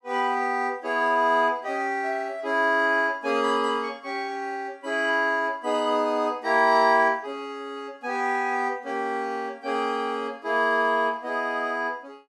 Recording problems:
none

